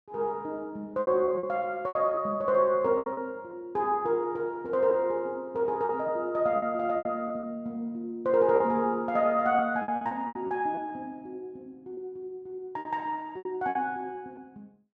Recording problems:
lost packets; 8% of the sound replaced, filled with repeated pitch periods

